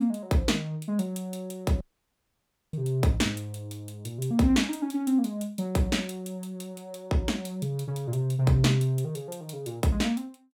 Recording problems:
dropout; at 2 s for 1 s

